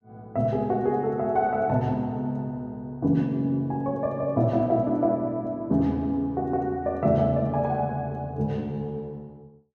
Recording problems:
none

